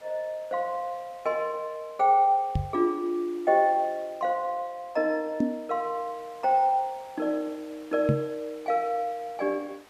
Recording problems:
background hiss; SNR 25 dB
microphone bump; at 2.5 s, at 5.5 s and at 8 s; peak +6 dB vs average level

